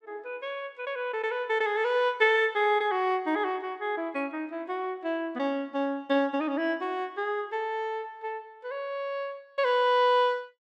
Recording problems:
none

